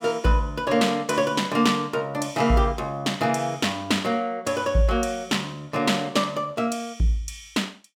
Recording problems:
none

